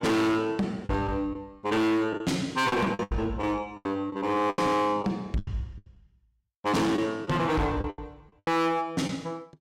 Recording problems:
distortion; hard clipping, uneven, signal-to-distortion ratio 7 dB
lost packets; 10% of the sound replaced, filled with the last packet

